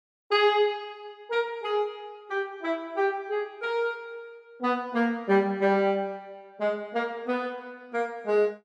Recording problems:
none

